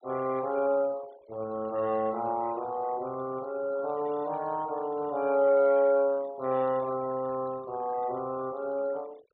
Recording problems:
treble cut off; nothing above 4.3 kHz
denoising artefacts; signal-to-artefact ratio 23 dB

